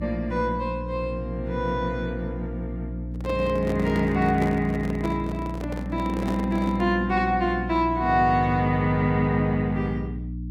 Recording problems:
electrical hum; 60 Hz, harmonics up to 300 Hz, SNR 8 dB
handling noise; from 3 to 7 s; peak -3 dB vs average level

